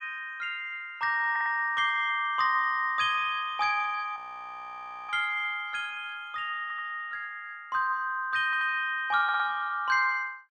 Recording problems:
audio stuttering; 4 times, first at 1.5 s
audio freezing; at 4 s for 1 s

